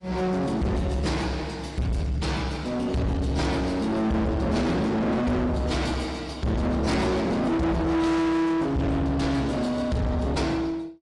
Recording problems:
lossy compression; AAC, log-spectral distance 2 dB, nothing above 10.4 kHz
distortion; soft clipping, signal-to-distortion ratio 6 dB

